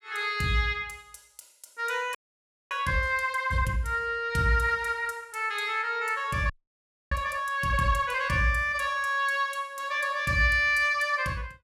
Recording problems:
frozen audio; at 2 s for 0.5 s and at 6.5 s for 0.5 s

